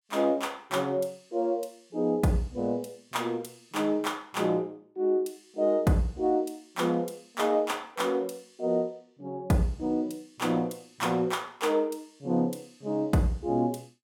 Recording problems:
none

